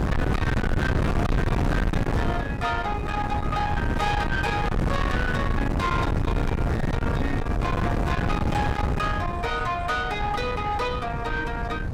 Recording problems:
distortion; soft clipping, signal-to-distortion ratio 7 dB
wind on the microphone; below 560 Hz, SNR 0 dB

